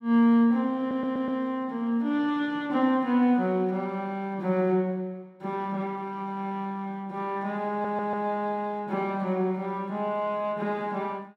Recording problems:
stutter; at 1 s and at 7.5 s

